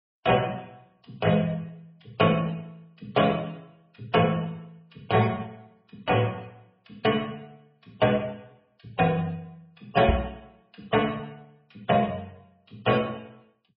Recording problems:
lossy compression; MP3, log-spectral distance 3 dB, nothing above 4.9 kHz
microphone thump; at 10 s; peak +5 dB vs average level

